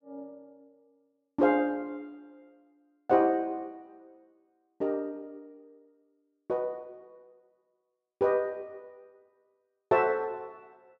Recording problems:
none

